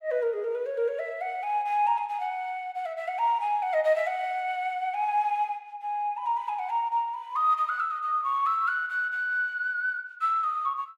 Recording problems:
none

